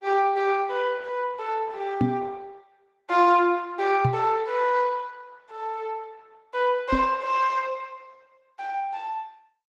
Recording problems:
codec artefacts; Opus, log-spectral distance 3 dB
microphone thump; at 2 s, at 4 s and at 7 s; peak +5 dB vs average level

